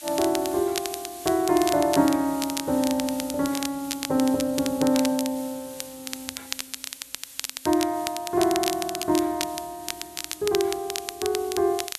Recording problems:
hiss; slope +3 dB per octave, SNR 16 dB
crackling; vinyl, SNR 8 dB

